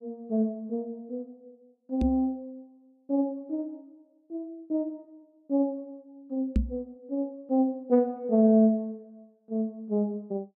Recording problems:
knock on the microphone; at 2 s and at 6.5 s; peak +6 dB vs average level

